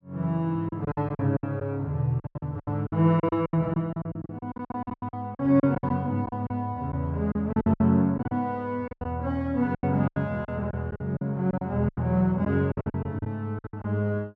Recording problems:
lost packets; 17% of the sound replaced, filled with silence

